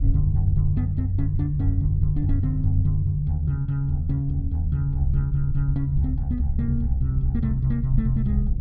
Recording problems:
rumble; below 76 Hz, SNR 5 dB

